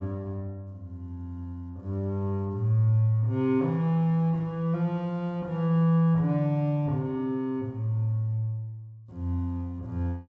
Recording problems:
low-pass filter; nothing above 8 kHz

